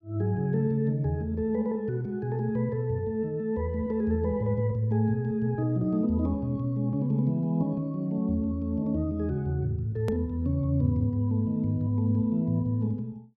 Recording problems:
hard cut with a click; at 10 s

